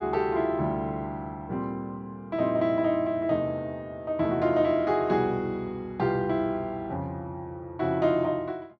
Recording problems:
none

